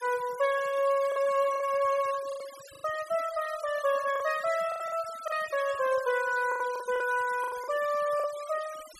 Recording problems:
noise reduction artefacts; signal-to-artefact ratio 18 dB
lost packets; 8% of the sound replaced, filled with the last packet

